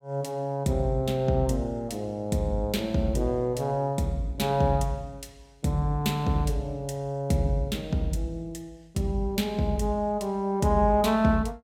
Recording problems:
none

